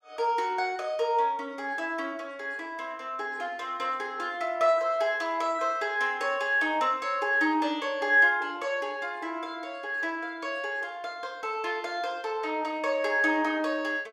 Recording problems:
none

